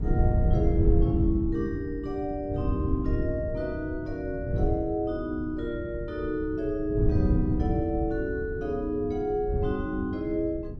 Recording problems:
hum; 50 Hz, harmonics up to 400 Hz, SNR 20 dB
wind on the microphone; below 120 Hz, SNR 1 dB

